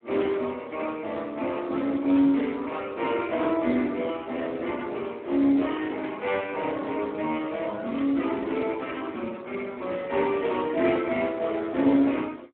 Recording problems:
phone line; 240 Hz to 3.5 kHz, Speex

